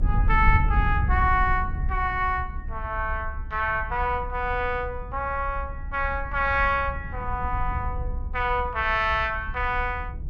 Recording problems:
low-frequency rumble; below 80 Hz, SNR 5 dB

